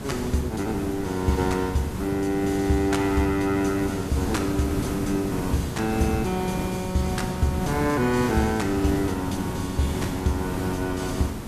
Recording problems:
hiss; slope -6 dB per octave, SNR 6 dB

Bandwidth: 14 kHz